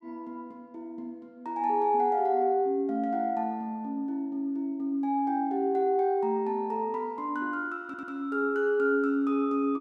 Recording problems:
audio stuttering; at 8 s

